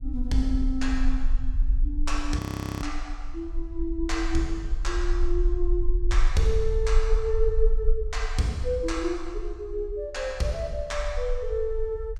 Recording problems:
rumble; below 44 Hz, strongest tone 20 Hz, SNR 1 dB
frozen audio; at 2.5 s

